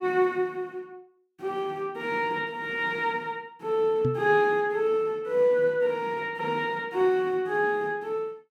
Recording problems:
microphone thump; at 4 s; peak +1 dB vs average level

